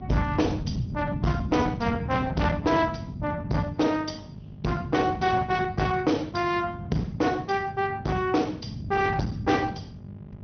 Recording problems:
treble cut off; nothing above 6.2 kHz
lossy codec; Opus, log-spectral distance 3 dB
distorted audio; hard clipping, uneven, signal-to-distortion ratio 7 dB
mains hum; 50 Hz, harmonics up to 800 Hz, SNR 18 dB
low-frequency rumble; below 210 Hz, SNR 7 dB

